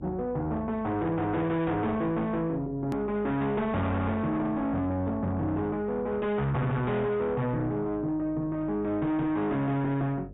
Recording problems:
treble missing; nothing above 4 kHz
distorted audio; soft clipping, signal-to-distortion ratio 7 dB
electrical hum; 50 Hz, harmonics up to 600 Hz, SNR 19 dB
click at an edit; at 3 s

